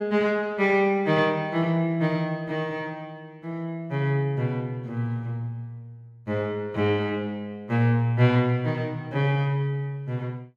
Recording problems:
none

